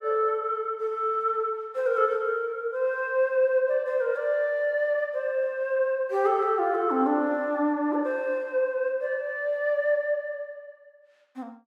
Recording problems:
none

